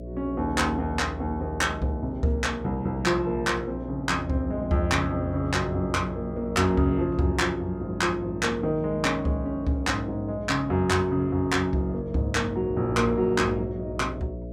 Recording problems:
electrical hum; 60 Hz, harmonics up to 660 Hz, SNR 11 dB

